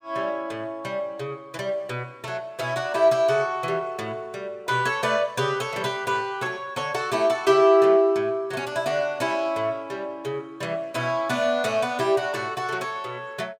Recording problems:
none

